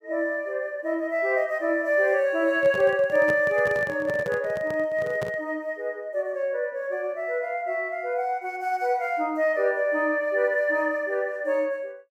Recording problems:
handling noise; from 2.5 to 5.5 s; peak -5 dB vs average level

